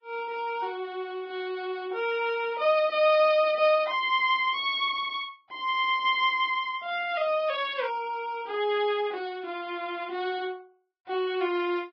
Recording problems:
codec artefacts; Vorbis, log-spectral distance 2 dB

